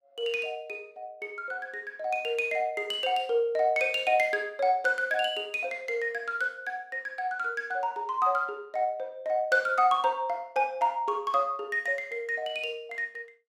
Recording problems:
none

